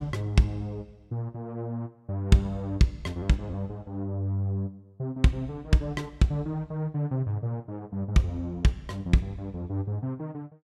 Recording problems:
none

